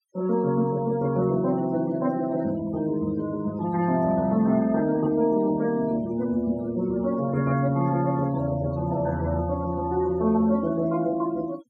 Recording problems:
noise reduction artefacts; signal-to-artefact ratio 21 dB

